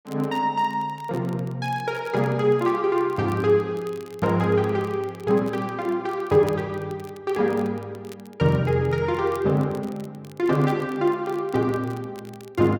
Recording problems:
crackle; vinyl, SNR 27 dB

